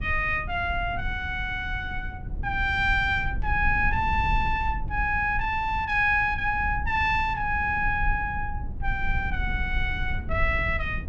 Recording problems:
rumble; below 76 Hz, SNR 8 dB

